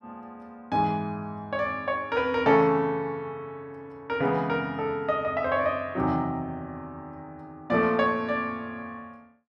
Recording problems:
none

